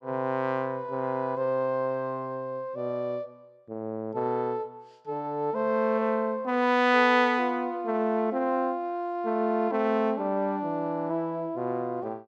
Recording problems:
none

